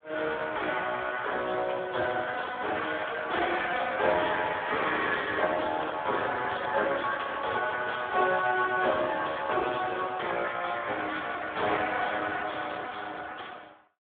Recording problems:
phone line; 320 Hz to 3.5 kHz, Speex

